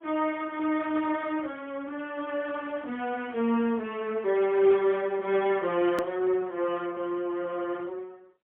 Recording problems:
phone line; 260 Hz to 3.3 kHz, AMR-NB, then MP3
click at an edit; at 6 s

